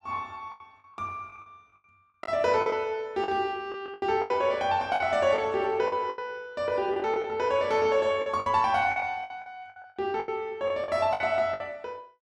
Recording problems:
packet loss; 13% of the sound replaced, filled with the last packet

